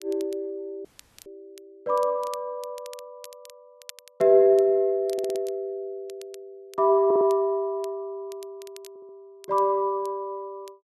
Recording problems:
crackle; vinyl, SNR 25 dB
audio cutting out; at 1 s
stutter; at 5 s, at 7 s and at 9 s

